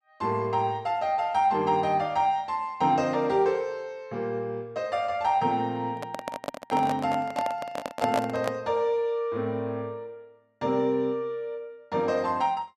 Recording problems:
microphone handling noise; from 6 to 8.5 s; peak +2 dB vs average level

